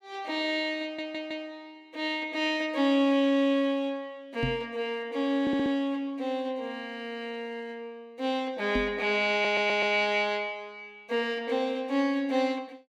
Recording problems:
stutter; at 1 s, at 5.5 s and at 9.5 s
microphone thump; at 4.5 s and at 9 s; peak +1 dB vs average level

